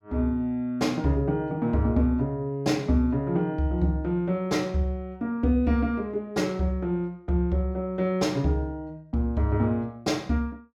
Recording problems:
none

